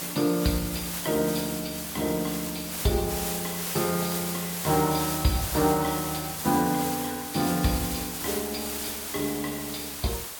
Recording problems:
lossy codec; MP3, log-spectral distance 6 dB
background hiss; slope -1 dB per octave, SNR 3 dB

